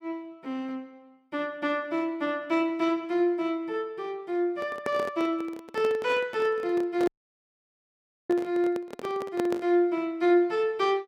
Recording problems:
microphone handling noise; from 4.5 to 9.5 s; peak -1 dB vs average level
audio cutting out; at 7 s for 1 s

